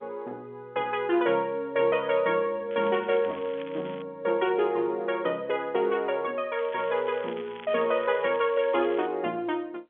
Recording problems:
telephone audio; 190 Hz to 3.4 kHz, G.711
crackle; from 2.5 to 4 s and from 6.5 to 9 s; loose cable, SNR 21 dB

